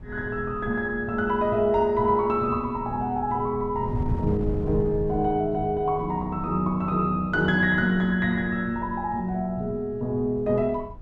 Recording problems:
wind noise; below 130 Hz, SNR 13 dB

